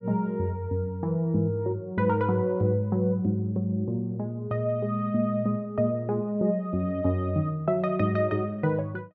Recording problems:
none

